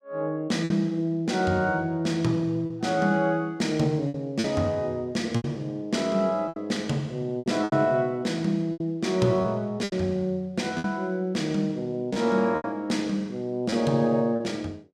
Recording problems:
lost packets; 6% of the sound replaced, filled with repeated pitch periods

